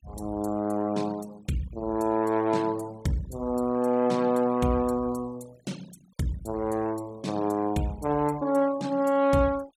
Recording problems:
noise reduction artefacts; signal-to-artefact ratio 22 dB

